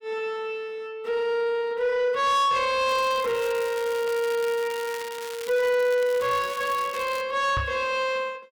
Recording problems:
distorted audio; soft clipping, signal-to-distortion ratio 10 dB
crackling; from 3 to 7 s; loose cable, SNR 15 dB
microphone bump; at 7.5 s; peak -1 dB vs average level

